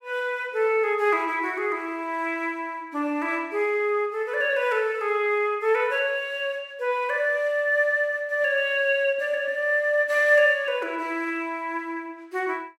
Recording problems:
none

